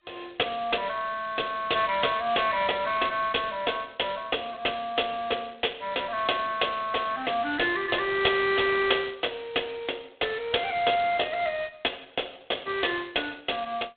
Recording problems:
phone line; 260 Hz to 3.6 kHz, G.726

